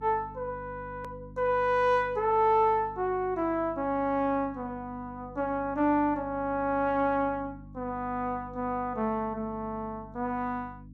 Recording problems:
mains hum; 50 Hz, harmonics up to 300 Hz, SNR 18 dB
hard cut with a click; at 1 s

